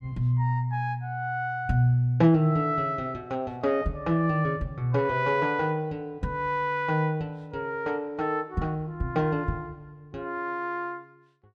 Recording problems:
none

